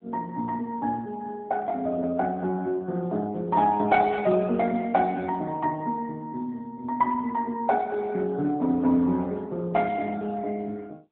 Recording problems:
telephone audio; 130 Hz to 3.7 kHz, AMR-NB

